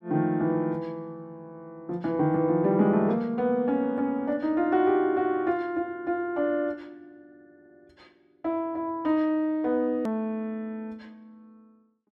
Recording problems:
hard cut with a click; at 10 s

